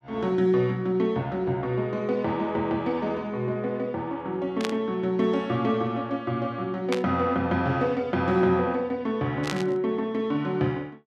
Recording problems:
burst of static; at 4.5 s, at 7 s and at 9.5 s; peak 0 dB vs average level

